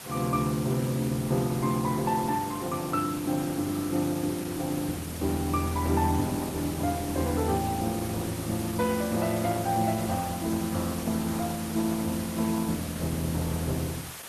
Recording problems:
codec artefacts; Opus, log-spectral distance 7 dB
hiss; slope -1 dB per octave, SNR 11 dB

